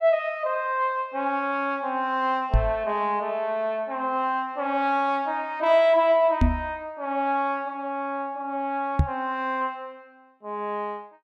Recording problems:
microphone bump; at 2.5 s, at 6.5 s and at 9 s; peak +8 dB vs average level

